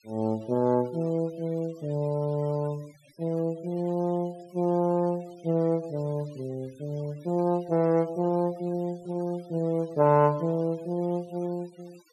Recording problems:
noise reduction artefacts; signal-to-artefact ratio 26 dB

